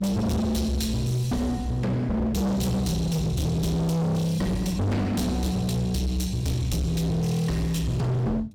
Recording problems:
distorted audio; hard clipping, signal-to-distortion ratio 6 dB
hum; 50 Hz, harmonics up to 600 Hz, SNR 25 dB

